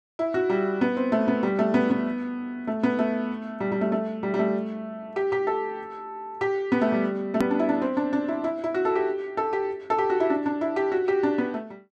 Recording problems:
hard cut with a click; at 7.5 s

